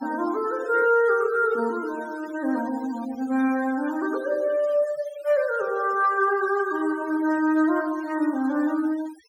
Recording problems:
denoising artefacts; signal-to-artefact ratio 19 dB

